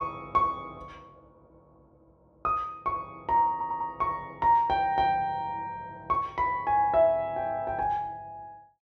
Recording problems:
stutter; at 3.5 s

